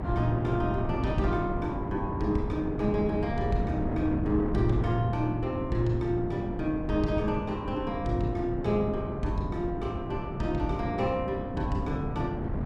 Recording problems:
wind on the microphone; below 290 Hz, SNR 4 dB

